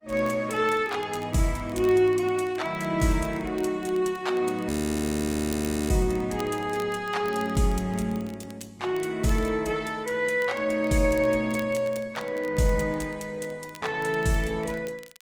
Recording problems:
lossy compression; Opus, log-spectral distance 3 dB, nothing above 19 kHz
crackling; vinyl, SNR 24 dB
frozen audio; at 4.5 s for 1 s

